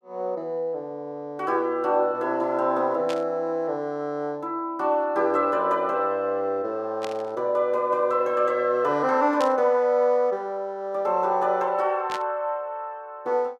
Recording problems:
burst of static; 4 times, first at 3 s; peak -6 dB vs average level

